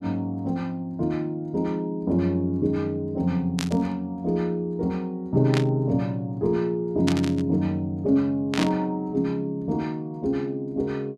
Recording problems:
static burst; 4 times, first at 3.5 s; peak +1 dB vs average level

